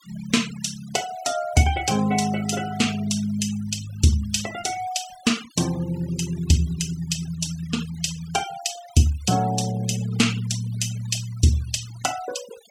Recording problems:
denoising artefacts; signal-to-artefact ratio 14 dB

